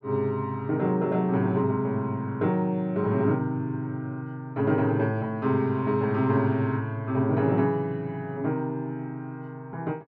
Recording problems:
none

